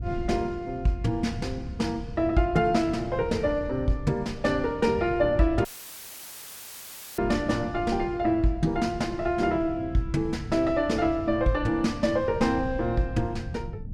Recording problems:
wind on the microphone; below 130 Hz, SNR 12 dB
dropout; at 5.5 s for 1.5 s; filled with static

